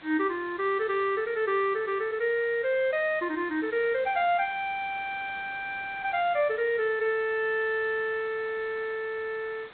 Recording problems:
low-pass filter; nothing above 4 kHz
hiss; SNR 20 dB

